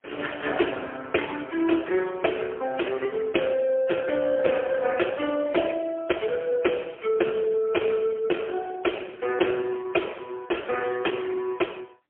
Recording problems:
telephone audio; 280 Hz to 2.5 kHz, AMR-NB, then MP3

